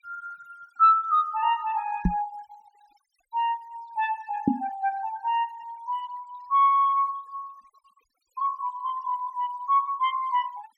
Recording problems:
noise reduction artefacts; signal-to-artefact ratio 27 dB
microphone bump; at 2 s and at 4.5 s; peak +7 dB vs average level

